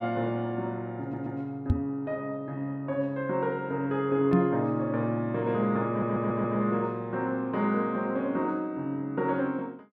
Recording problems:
stutter; at 1 s and at 6 s
knock on the microphone; at 1.5 s and at 4.5 s; peak +8 dB vs average level

